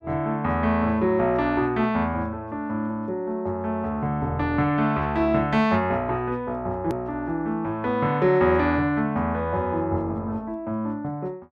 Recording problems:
click at an edit; at 7 s

